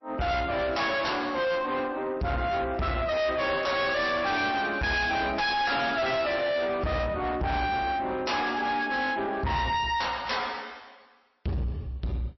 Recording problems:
codec artefacts; MP3, log-spectral distance 4 dB, nothing above 5.7 kHz
distorted audio; soft clipping, signal-to-distortion ratio 6 dB

